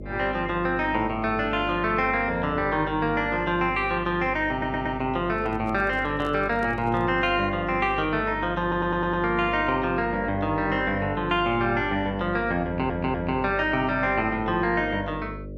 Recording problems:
mains hum; 50 Hz, harmonics up to 600 Hz, SNR 13 dB
stutter; at 4.5 s, at 8.5 s and at 13 s
handling noise; from 5.5 to 7.5 s; peak -9 dB vs average level

